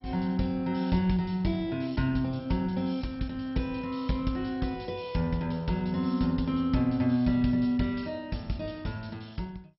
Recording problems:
lossy compression; MP2, log-spectral distance 4 dB, nothing above 5.5 kHz

